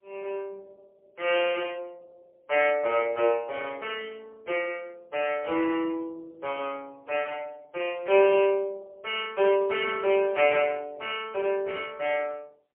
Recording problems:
telephone audio; 300 Hz to 3.2 kHz, AMR-NB, then MP3

